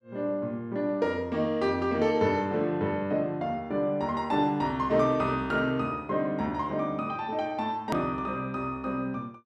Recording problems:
hard cut with a click; at 8 s

